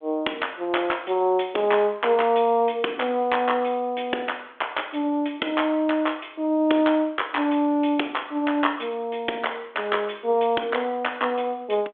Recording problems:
phone line; 260 Hz to 3.5 kHz, G.726

